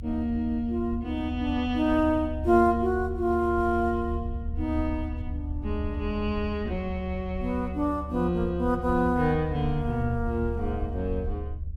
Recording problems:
low-frequency rumble; below 76 Hz, strongest tone 74 Hz, SNR 8 dB

